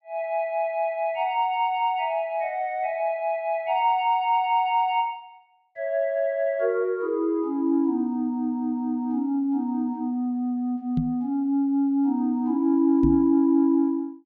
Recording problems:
microphone bump; at 11 s and at 13 s; peak +2 dB vs average level

